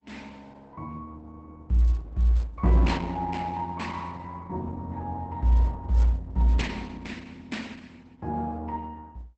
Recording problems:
lossy compression; Opus, log-spectral distance 3 dB, nothing above 8 kHz

